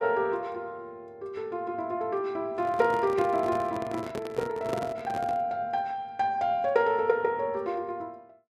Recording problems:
microphone handling noise; from 2.5 to 5.5 s; peak 0 dB vs average level

